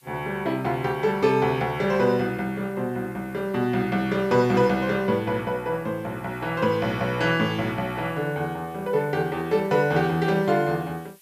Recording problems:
background hiss; slope +2 dB per octave, SNR 30 dB

